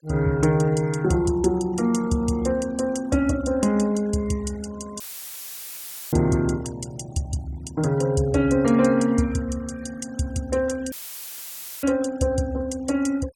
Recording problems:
denoising artefacts; signal-to-artefact ratio 21 dB
audio cutting out; at 5 s for 1 s and at 11 s for 1 s; filled with static

